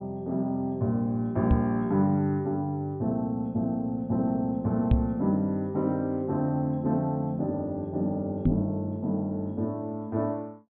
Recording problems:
low-pass filter; nothing above 4 kHz
microphone thump; at 1.5 s, at 5 s and at 8.5 s; peak +8 dB vs average level

